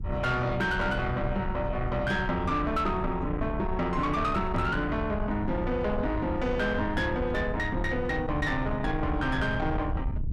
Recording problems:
distorted audio; soft clipping, signal-to-distortion ratio 11 dB
low-frequency rumble; below 130 Hz, SNR 6 dB
knock on the microphone; at 4.5 s; peak +3 dB vs average level

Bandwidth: 14.5 kHz